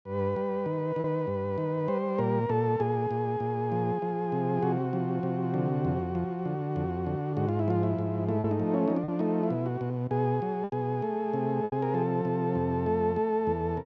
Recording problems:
lost packets; 2% of the sound replaced, filled with repeated pitch periods

